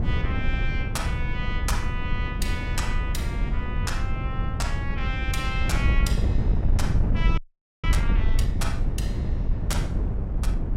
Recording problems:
electrical hum; 60 Hz, harmonics up to 780 Hz, SNR 18 dB
wind on the microphone; below 94 Hz, SNR -6 dB
frozen audio; at 7.5 s

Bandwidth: 16 kHz